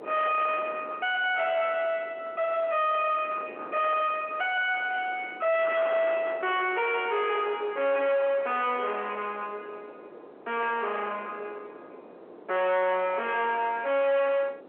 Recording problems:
phone line; 300 Hz to 3.3 kHz, G.711
distorted audio; soft clipping, signal-to-distortion ratio 5 dB
wind noise; below 1.7 kHz, SNR 15 dB

